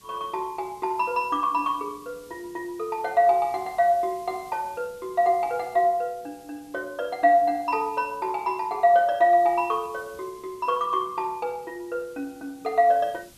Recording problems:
hiss; SNR 27 dB

